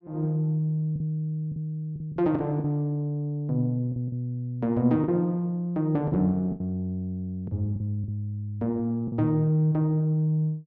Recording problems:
packet loss; 6% of the sound replaced, filled with the last packet

